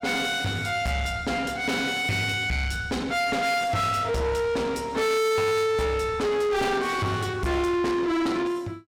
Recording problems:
distorted audio; soft clipping, signal-to-distortion ratio 6 dB

